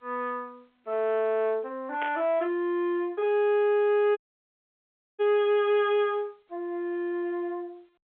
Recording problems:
phone line; 300 Hz to 3.7 kHz, G.711
distortion; soft clipping, signal-to-distortion ratio 11 dB
burst of static; at 2 s; peak -5 dB vs average level
audio cutting out; at 4 s for 1 s

